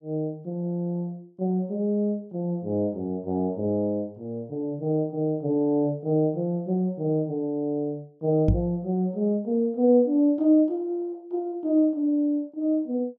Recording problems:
microphone bump; at 8.5 s; peak +7 dB vs average level

